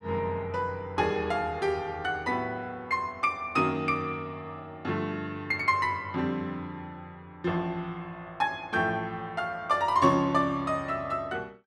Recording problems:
none

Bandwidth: 12.5 kHz